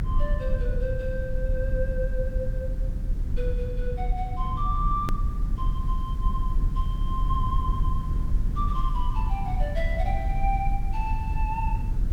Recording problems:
hiss; slope 0 dB per octave, SNR 25 dB
low-frequency rumble; below 66 Hz, strongest tone 36 Hz, SNR -4 dB
click at an edit; at 5 s

